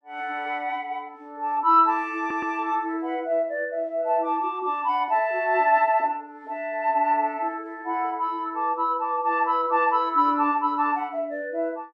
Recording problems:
audio stuttering; at 2 s

